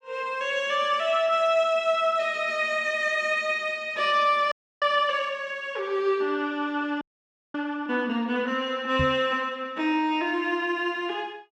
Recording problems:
audio freezing; at 4.5 s and at 7 s for 0.5 s
knock on the microphone; at 9 s; peak +1 dB vs average level

